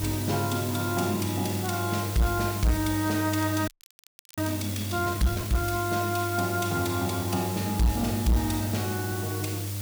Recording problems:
distorted audio; soft clipping, signal-to-distortion ratio 11 dB
hum; 50 Hz, harmonics up to 600 Hz, SNR 5 dB
background hiss; slope +2 dB per octave, SNR 7 dB
crackle; vinyl, SNR 26 dB
frozen audio; at 3.5 s for 0.5 s

